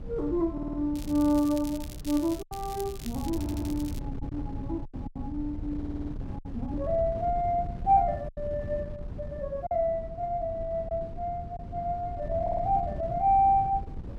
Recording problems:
wind on the microphone; below 160 Hz, SNR 10 dB
packet loss; 4% of the sound replaced, filled with silence
audio stuttering; 4 times, first at 0.5 s
crackle; from 1 to 4 s; loose cable, SNR 16 dB

